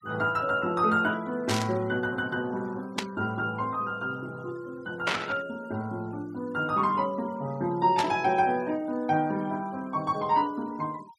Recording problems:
noise reduction artefacts; signal-to-artefact ratio 24 dB
burst of static; 4 times, first at 1.5 s; peak +4 dB vs average level

